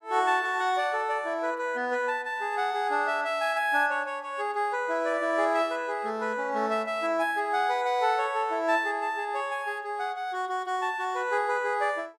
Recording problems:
none

